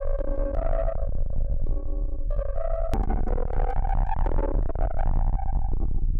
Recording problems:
distorted audio; soft clipping, signal-to-distortion ratio 6 dB
low-frequency rumble; below 56 Hz, SNR -2 dB
hard cut with a click; at 3 s

